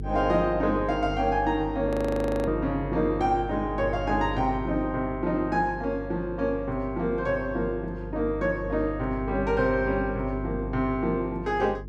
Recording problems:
hum; 50 Hz, harmonics up to 450 Hz, SNR 10 dB
frozen audio; at 2 s for 0.5 s

